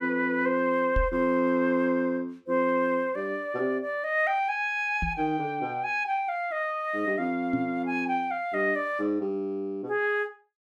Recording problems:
knock on the microphone; at 1 s, at 5 s and at 7.5 s; peak +1 dB vs average level

